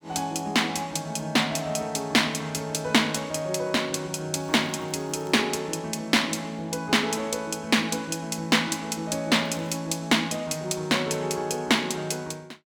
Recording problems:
crackling; at 4.5 s and at 9.5 s; loose cable, SNR 30 dB

